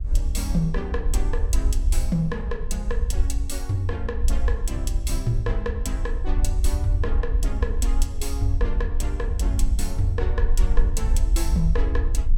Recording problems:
low-frequency rumble; below 58 Hz, SNR -4 dB
wind on the microphone; below 160 Hz, SNR 16 dB

